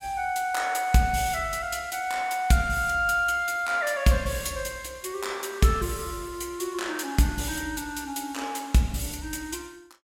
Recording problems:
none

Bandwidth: 16.5 kHz